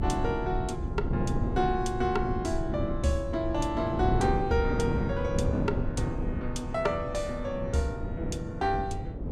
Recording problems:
rumble; below 98 Hz, SNR 8 dB
wind on the microphone; below 280 Hz, SNR 3 dB

